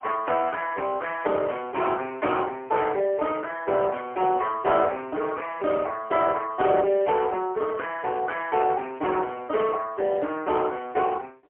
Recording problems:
phone line; 320 Hz to 3.2 kHz, AMR-NB, then MP3

